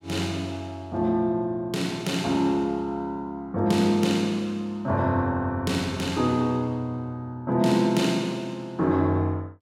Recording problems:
none

